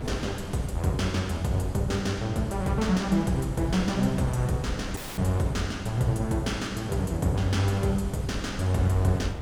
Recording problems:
wind noise; below 290 Hz, SNR 14 dB
audio cutting out; at 5 s

